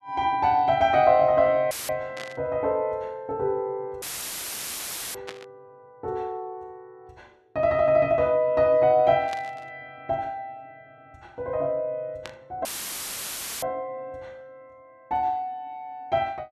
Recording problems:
dropout; at 1.5 s, at 4 s for 1 s and at 13 s for 1 s; filled with static
static burst; 4 times, first at 2 s; peak -9 dB vs average level

